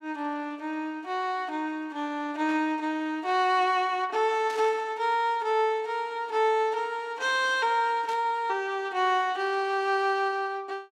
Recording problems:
static burst; at 2.5 s, at 4.5 s and at 8 s; peak -12 dB vs average level

